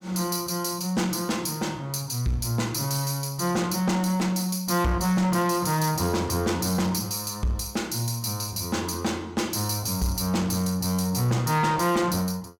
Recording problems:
distorted audio; soft clipping, signal-to-distortion ratio 10 dB

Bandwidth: 18 kHz